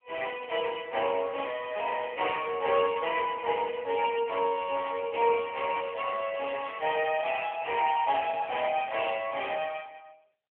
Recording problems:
phone line; 320 Hz to 3.1 kHz, AMR-NB

